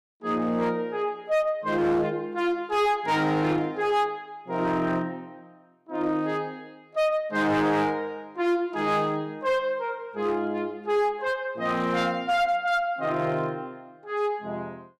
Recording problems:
distortion; hard clipping, signal-to-distortion ratio 11 dB

